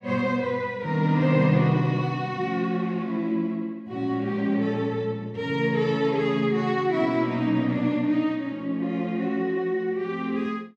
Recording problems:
none

